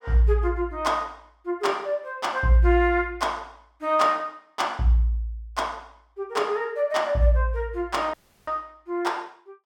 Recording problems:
audio cutting out; at 8 s

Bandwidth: 17 kHz